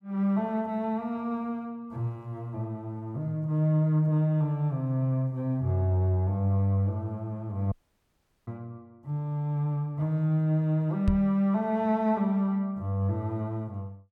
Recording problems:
audio cutting out; at 7.5 s for 1 s
microphone thump; at 11 s; peak +6 dB vs average level

